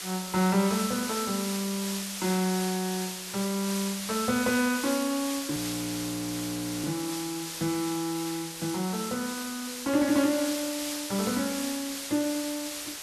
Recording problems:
hiss; slope +2 dB per octave, SNR 5 dB
frozen audio; at 5.5 s for 1.5 s

